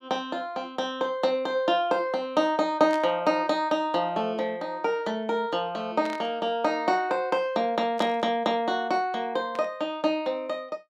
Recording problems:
static burst; 4 times, first at 3 s; peak -9 dB vs average level

